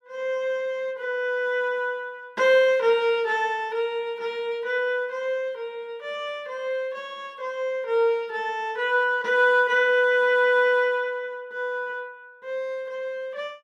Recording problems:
none

